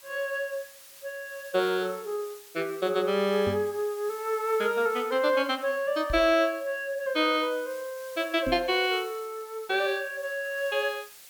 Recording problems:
hiss; slope +2 dB per octave, SNR 20 dB
microphone thump; at 3.5 s, at 6 s and at 8.5 s; peak -2 dB vs average level

